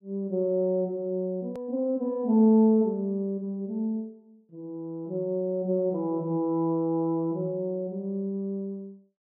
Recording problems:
hard cut with a click; at 1.5 s

